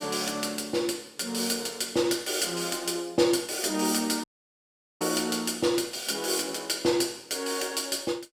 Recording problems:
dropout; at 4 s for 1 s

